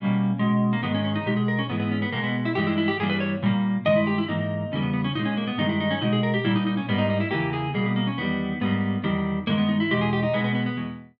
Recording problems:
none

